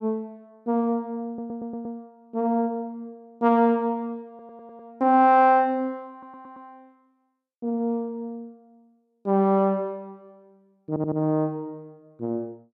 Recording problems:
stutter; 4 times, first at 1.5 s

